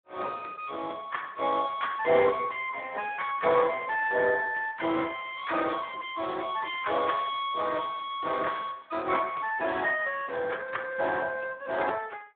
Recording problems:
phone line; 280 Hz to 3.6 kHz, Speex

